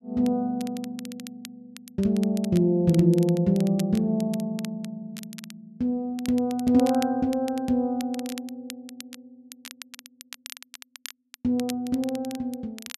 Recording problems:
crackle; vinyl, SNR 18 dB

